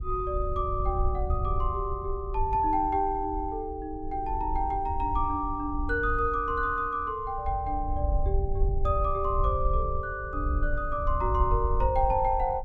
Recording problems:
wind noise; below 68 Hz, SNR 4 dB

